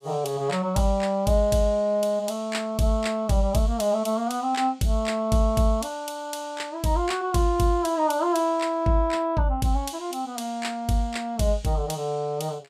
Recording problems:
none

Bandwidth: 15 kHz